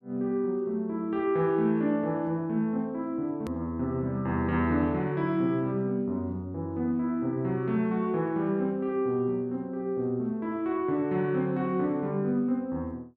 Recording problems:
click at an edit; at 3.5 s

